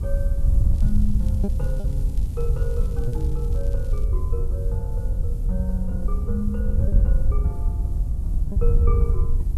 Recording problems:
electrical hum; 60 Hz, harmonics up to 720 Hz, SNR 14 dB
hiss; slope +3 dB per octave, SNR 22 dB
wind noise; below 72 Hz, SNR -9 dB
lost packets; 2% of the sound replaced, filled with repeated pitch periods
crackling; from 0.5 to 4 s; loose cable, SNR 22 dB

